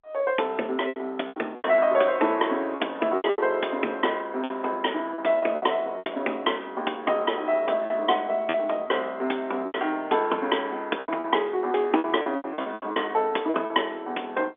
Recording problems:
phone line; 240 Hz to 3.5 kHz, G.711
packet loss; 11% of the sound replaced, filled with repeated pitch periods

